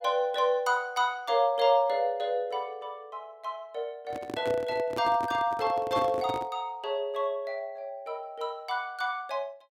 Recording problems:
handling noise; from 4 to 6.5 s; peak -2 dB vs average level

